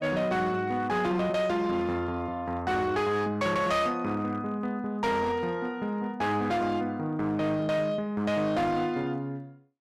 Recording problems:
distortion; hard clipping, signal-to-distortion ratio 11 dB

